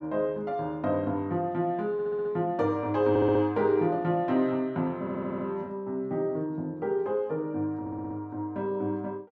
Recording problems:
stutter; 4 times, first at 2 s

